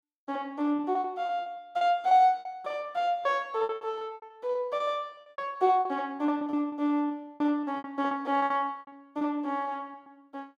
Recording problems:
packet loss; 19% of the sound replaced, filled with repeated pitch periods

